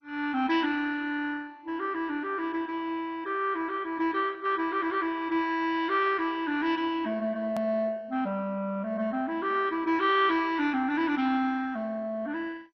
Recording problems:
codec artefacts; MP2, log-spectral distance 3 dB
hard cut with a click; at 7.5 s

